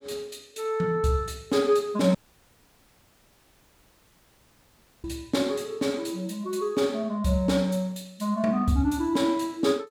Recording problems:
dropout; at 2 s for 3 s

